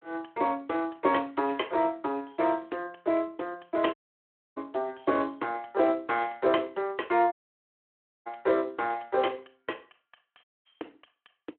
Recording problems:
telephone audio; 240 Hz to 3.3 kHz, Speex
audio cutting out; at 4 s for 0.5 s, at 7.5 s for 1 s and at 10 s

